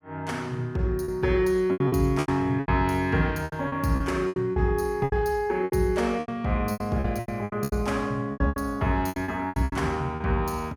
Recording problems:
packet loss; 16% of the sound replaced, filled with repeated pitch periods

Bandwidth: 18 kHz